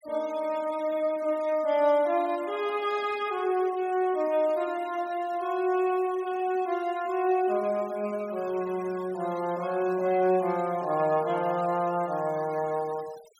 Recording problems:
denoising artefacts; signal-to-artefact ratio 22 dB

